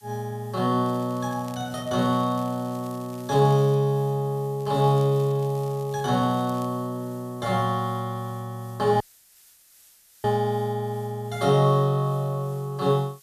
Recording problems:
hiss; slope +4 dB per octave, SNR 27 dB
crackle; from 1 to 4 s and from 4.5 to 6.5 s; loose cable, SNR 26 dB
dropout; at 9 s for 1 s

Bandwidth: 14.5 kHz